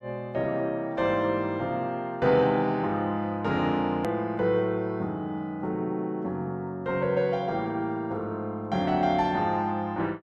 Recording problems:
hard cut with a click; at 4 s

